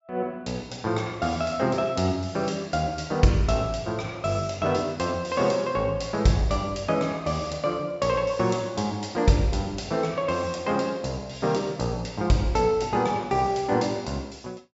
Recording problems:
treble cut off; nothing above 8 kHz

